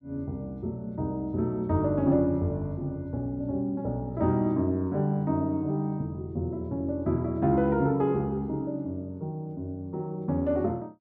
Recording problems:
none

